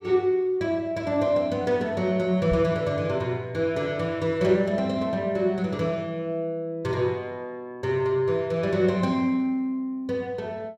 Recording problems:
microphone bump; at 2.5 s; peak -1 dB vs average level

